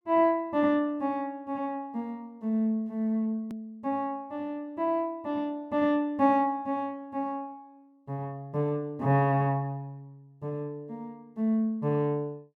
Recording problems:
edit click; at 3.5 s

